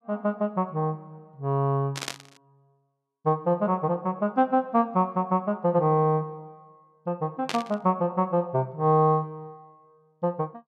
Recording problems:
static burst; at 2 s and at 7.5 s; peak -1 dB vs average level

